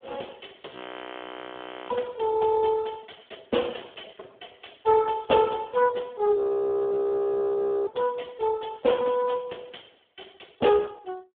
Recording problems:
telephone audio; 280 Hz to 3.4 kHz, Speex
audio freezing; at 0.5 s for 1 s and at 6.5 s for 1.5 s

